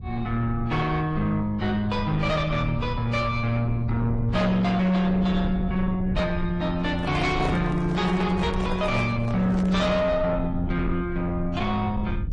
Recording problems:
lossy codec; MP3, then AAC, log-spectral distance 2 dB
distorted audio; soft clipping, signal-to-distortion ratio 11 dB
rumble; below 120 Hz, SNR 9 dB
microphone handling noise; from 7 to 10 s; peak -4 dB vs average level

